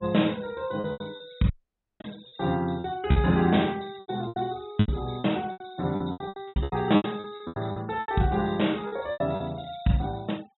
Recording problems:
treble cut off; nothing above 3.8 kHz
noise reduction artefacts; signal-to-artefact ratio 25 dB
packet loss; 16% of the sound replaced, filled with repeated pitch periods
dropout; at 1.5 s for 0.5 s

